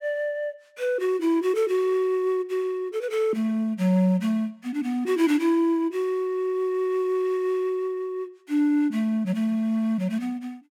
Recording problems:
none

